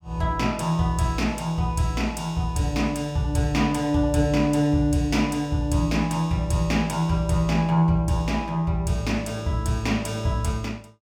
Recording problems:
none

